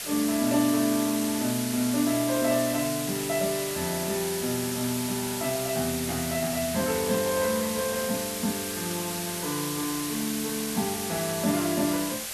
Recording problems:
background hiss; SNR 4 dB

